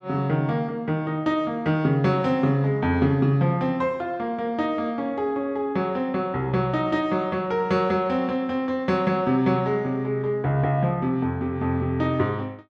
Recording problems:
none

